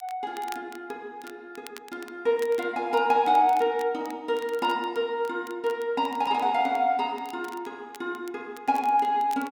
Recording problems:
crackle; vinyl, SNR 24 dB

